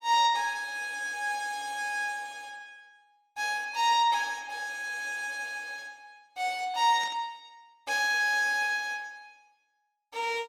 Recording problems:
static burst; at 7 s; peak -11 dB vs average level

